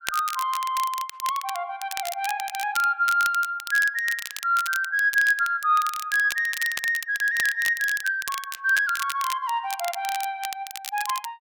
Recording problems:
crackle; vinyl, SNR 11 dB

